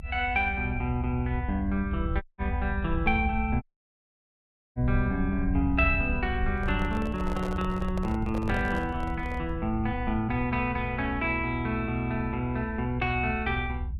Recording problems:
rumble; below 78 Hz, SNR 5 dB
dropout; at 2 s and at 3.5 s for 1 s
microphone handling noise; from 6.5 to 9.5 s; peak -5 dB vs average level

